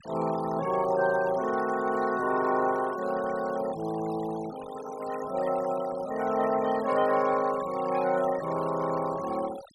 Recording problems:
noise reduction artefacts; signal-to-artefact ratio 16 dB

